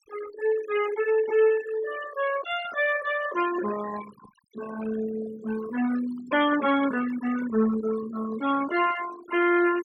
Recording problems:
noise reduction artefacts; signal-to-artefact ratio 13 dB

